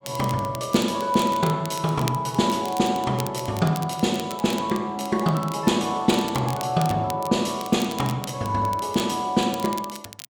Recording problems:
crackle; vinyl, SNR 16 dB

